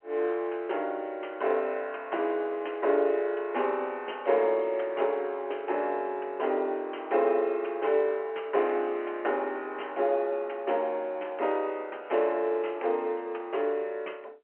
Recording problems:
phone line; 300 Hz to 3.1 kHz, G.711

